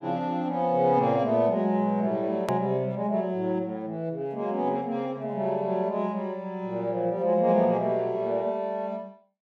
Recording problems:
hard cut with a click; at 2.5 s

